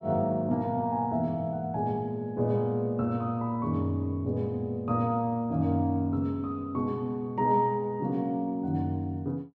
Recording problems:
none

